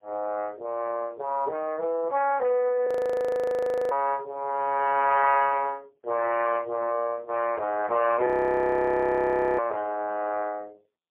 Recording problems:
telephone audio; 320 Hz to 2.8 kHz, AMR-NB, then MP3
audio freezing; at 3 s for 1 s and at 8.5 s for 1.5 s

